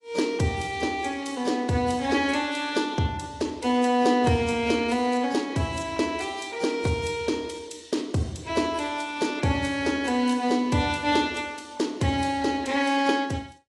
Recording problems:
codec artefacts; AAC, log-spectral distance 4 dB, nothing above 10.7 kHz

